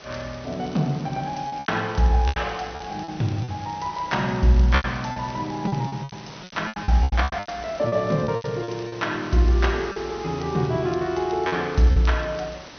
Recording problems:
treble missing; nothing above 6.2 kHz
hiss; slope -3 dB per octave, SNR 17 dB
crackle; vinyl, SNR 26 dB
lost packets; 11% of the sound replaced, filled with repeated pitch periods

